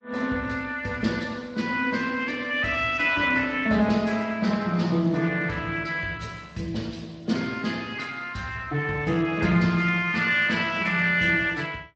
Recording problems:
lossy codec; Speex, then MP3, log-spectral distance 4 dB, nothing above 7.3 kHz

